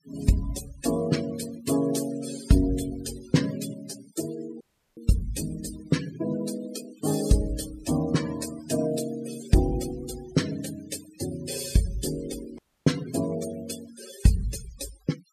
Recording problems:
denoising artefacts; signal-to-artefact ratio 12 dB
dropout; at 4.5 s and at 13 s

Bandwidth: 14.5 kHz